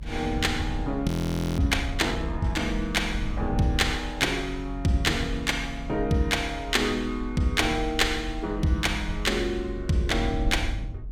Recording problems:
low-frequency rumble; below 80 Hz, strongest tone 44 Hz, SNR 9 dB
frozen audio; at 1 s for 0.5 s

